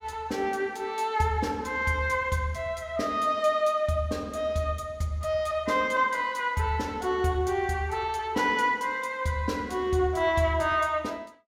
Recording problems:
none

